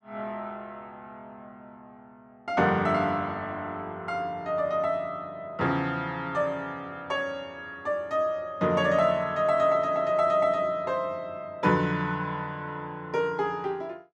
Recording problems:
none

